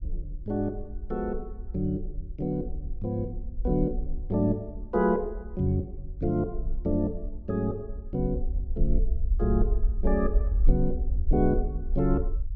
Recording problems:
rumble; below 54 Hz, SNR 4 dB

